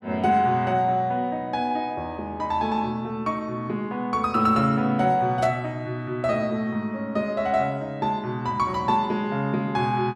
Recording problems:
burst of static; at 5.5 s; peak -9 dB vs average level

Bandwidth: 13 kHz